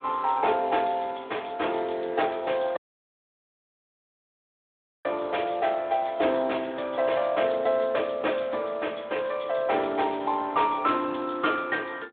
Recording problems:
telephone audio; 260 Hz to 3.6 kHz, Speex
audio cutting out; at 3 s for 2.5 s

